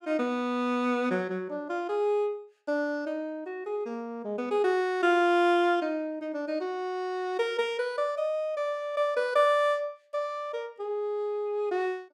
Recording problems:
none

